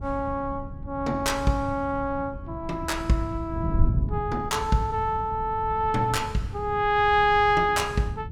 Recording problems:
wind noise; below 130 Hz, SNR 9 dB

